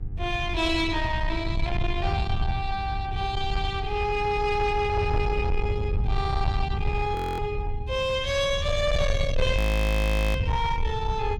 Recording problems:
distorted audio; soft clipping, signal-to-distortion ratio 11 dB
hum; 50 Hz, harmonics up to 900 Hz, SNR 22 dB
low-frequency rumble; below 110 Hz, SNR 3 dB
audio freezing; at 7 s and at 9.5 s for 1 s

